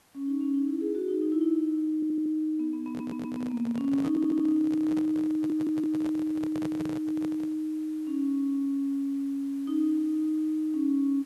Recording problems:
background hiss; slope -3 dB per octave, SNR 30 dB
audio stuttering; 4 times, first at 2 s
handling noise; from 3 to 7.5 s; peak -6 dB vs average level

